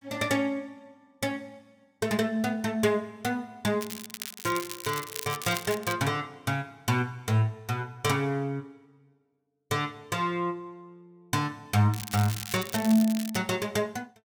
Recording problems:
crackling; from 4 to 6 s and from 12 to 13 s; loose cable, SNR 9 dB

